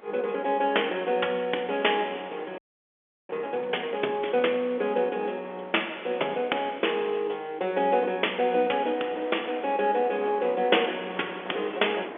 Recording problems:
telephone audio; 280 Hz to 3.5 kHz, G.711
wind noise; below 1.3 kHz, SNR 18 dB
frozen audio; at 2.5 s for 0.5 s

